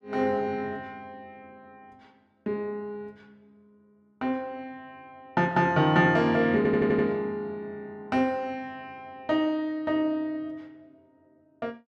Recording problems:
audio stuttering; at 6.5 s

